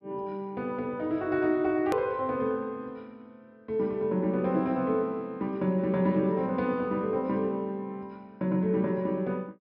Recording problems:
low-pass filter; nothing above 5.5 kHz
click at an edit; at 2 s

